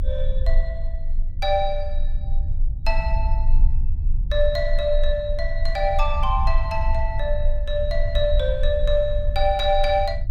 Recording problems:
low-frequency rumble; below 48 Hz, strongest tone 22 Hz, SNR 1 dB

